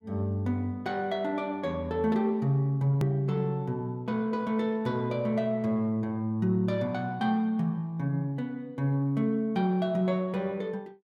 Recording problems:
hard cut with a click; at 3 s

